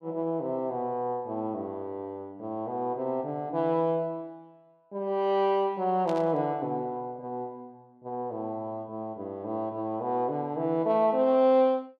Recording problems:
static burst; at 6 s; peak -11 dB vs average level

